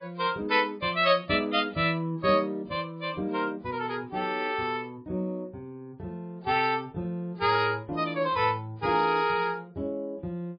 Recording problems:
lossy codec; MP3, log-spectral distance 3 dB

